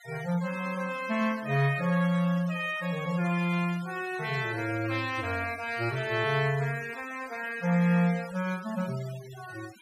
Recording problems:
noise reduction artefacts; signal-to-artefact ratio 18 dB

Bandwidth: 15 kHz